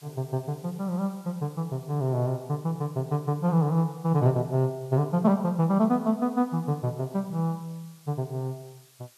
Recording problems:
background hiss; slope +1 dB per octave, SNR 27 dB

